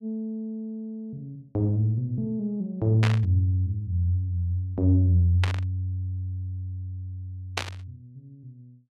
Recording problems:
burst of static; at 3 s, at 5.5 s and at 7.5 s; peak +3 dB vs average level

